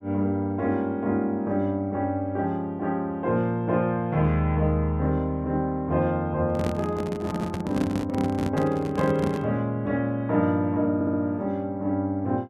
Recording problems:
microphone handling noise; from 6.5 to 9.5 s; peak 0 dB vs average level
audio stuttering; at 11 s

